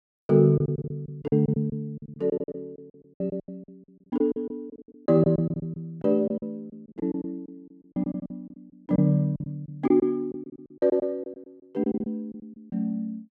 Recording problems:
lost packets; 17% of the sound replaced, filled with silence

